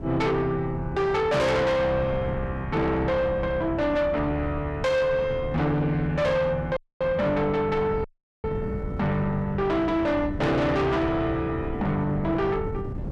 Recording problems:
distorted audio; soft clipping, signal-to-distortion ratio 7 dB
wind noise; below 230 Hz, SNR 11 dB
dropout; at 7 s and at 8 s

